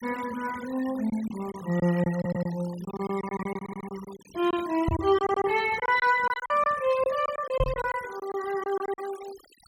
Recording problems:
noise reduction artefacts; signal-to-artefact ratio 18 dB
lost packets; 11% of the sound replaced, filled with silence
stutter; at 2 s, at 3.5 s and at 5 s
knock on the microphone; at 5 s and at 7.5 s; peak +2 dB vs average level

